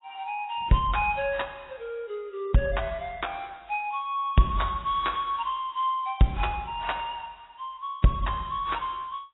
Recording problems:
lossy codec; AAC, log-spectral distance 3 dB, nothing above 3.7 kHz

